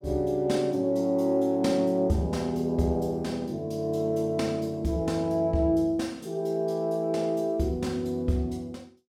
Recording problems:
none

